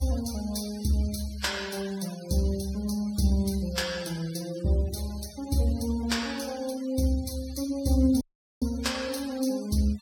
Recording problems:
denoising artefacts; signal-to-artefact ratio 17 dB
dropout; at 8 s

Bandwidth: 17 kHz